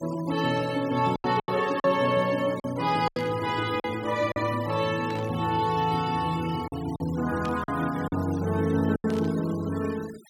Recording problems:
noise reduction artefacts; signal-to-artefact ratio 18 dB
packet loss; 6% of the sound replaced, filled with silence
static burst; 4 times, first at 3 s; peak -10 dB vs average level

